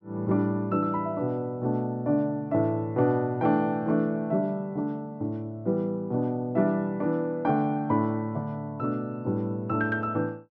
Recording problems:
none

